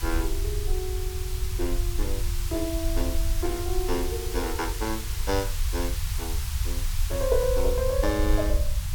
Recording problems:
background hiss; SNR 6 dB
rumble; below 64 Hz, SNR 0 dB

